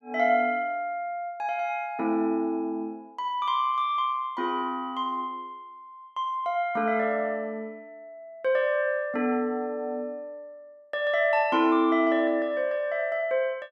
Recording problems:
none

